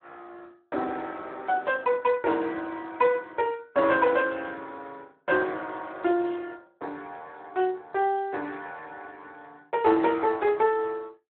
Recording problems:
phone line; 240 Hz to 3.5 kHz, Speex

